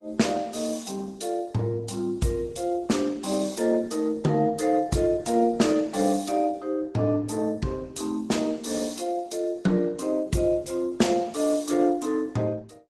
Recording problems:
lossy compression; MP3, then Opus, log-spectral distance 4 dB

